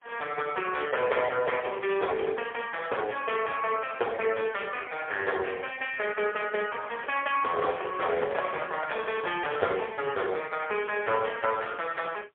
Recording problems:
phone line; 340 Hz to 3.3 kHz, AMR-NB, then MP3
microphone handling noise; from 7.5 to 10 s; peak -1 dB vs average level

